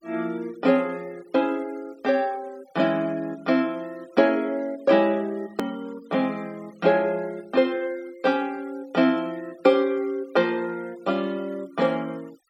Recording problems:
noise reduction artefacts; signal-to-artefact ratio 27 dB
hard cut with a click; at 5.5 s

